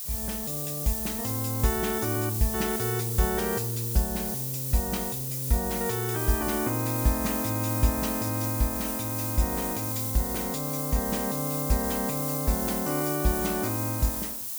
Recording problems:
background hiss; SNR 1 dB

